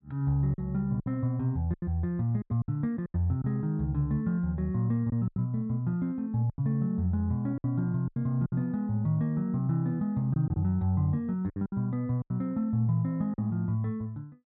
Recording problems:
packet loss; 8% of the sound replaced, filled with silence

